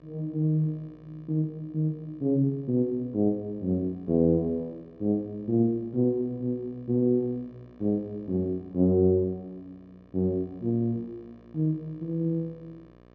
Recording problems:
hum; 60 Hz, harmonics up to 1.9 kHz, SNR 28 dB

